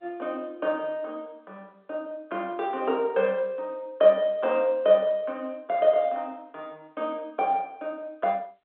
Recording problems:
phone line; 240 Hz to 3.5 kHz, G.711

